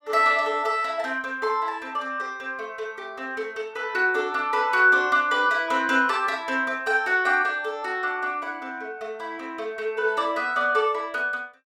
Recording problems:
none

